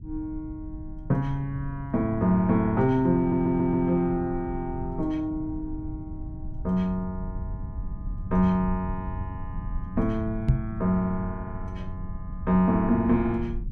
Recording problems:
low-frequency rumble; below 100 Hz, SNR 11 dB
stutter; at 3 s
microphone bump; at 10 s; peak +8 dB vs average level

